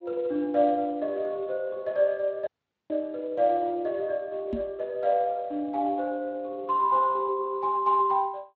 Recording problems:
lossy codec; Speex, log-spectral distance 2 dB
dropout; at 2.5 s
knock on the microphone; at 4.5 s; peak -1 dB vs average level

